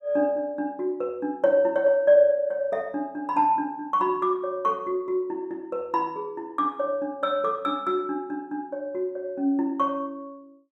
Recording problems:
none

